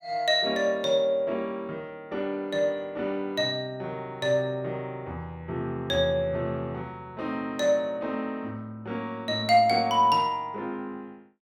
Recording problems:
none

